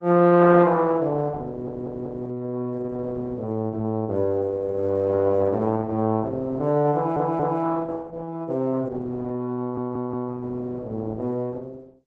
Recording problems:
codec artefacts; Opus, log-spectral distance 2 dB
audio stuttering; at 1.5 s, at 7 s and at 9.5 s

